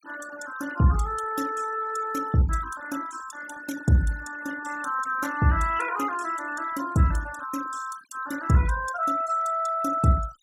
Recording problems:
noise reduction artefacts; signal-to-artefact ratio 15 dB

